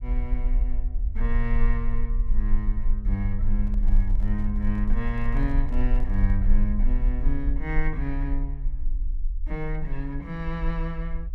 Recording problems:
rumble; below 40 Hz, strongest tone 20 Hz, SNR -3 dB
microphone handling noise; from 3.5 to 6.5 s; peak -13 dB vs average level

